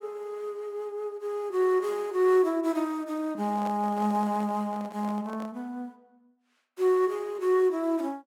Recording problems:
microphone handling noise; from 3.5 to 5.5 s; peak -8 dB vs average level

